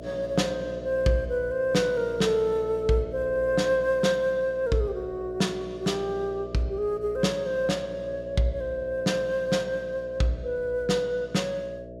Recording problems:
electrical hum; 60 Hz, harmonics up to 660 Hz, SNR 14 dB

